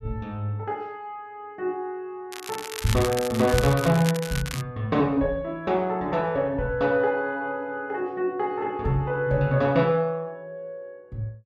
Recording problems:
crackling; from 2.5 to 4.5 s; loose cable, SNR 9 dB

